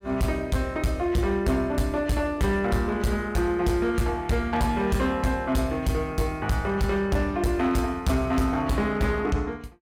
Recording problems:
distorted audio; hard clipping, signal-to-distortion ratio 11 dB

